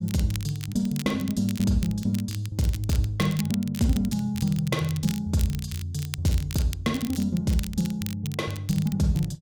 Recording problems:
crackling; vinyl, SNR 14 dB

